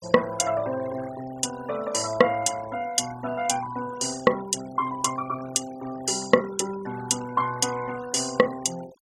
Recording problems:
denoising artefacts; signal-to-artefact ratio 17 dB

